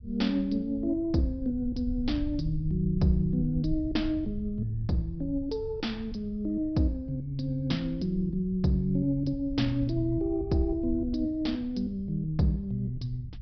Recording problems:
treble cut off; nothing above 5.5 kHz
rumble; below 90 Hz, SNR 12 dB

